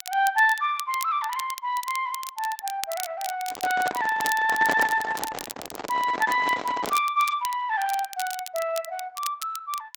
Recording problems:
lossy codec; Opus, log-spectral distance 3 dB
crackling; vinyl, SNR 12 dB
handling noise; from 3.5 to 7 s; peak +1 dB vs average level

